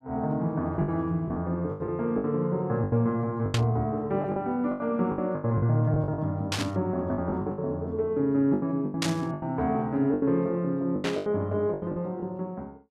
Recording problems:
packet loss; 13% of the sound replaced, filled with the last packet
static burst; 4 times, first at 3.5 s; peak +3 dB vs average level

